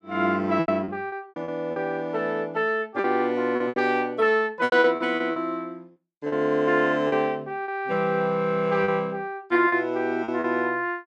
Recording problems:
lost packets; 9% of the sound replaced, filled with repeated pitch periods

